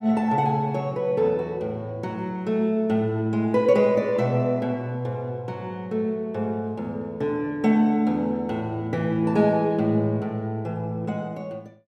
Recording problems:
none

